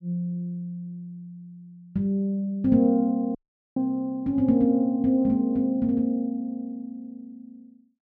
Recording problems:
audio cutting out; at 3.5 s

